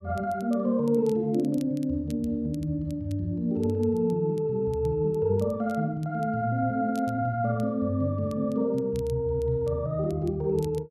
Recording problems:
crackle; vinyl, SNR 28 dB

